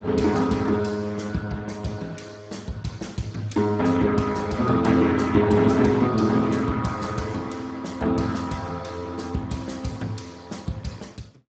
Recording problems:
lossy compression; Speex, log-spectral distance 4 dB, nothing above 7.6 kHz

